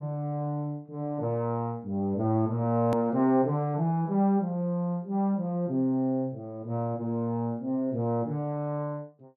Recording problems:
hard cut with a click; at 3 s

